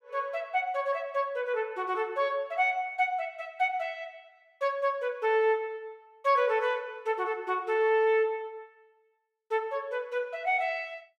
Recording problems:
none

